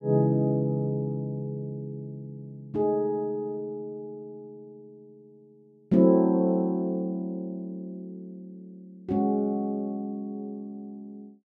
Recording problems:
none

